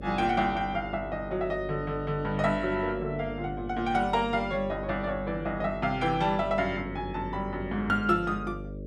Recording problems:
hum; 50 Hz, harmonics up to 600 Hz, SNR 11 dB

